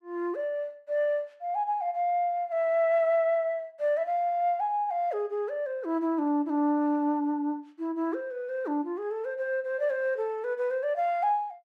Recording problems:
none

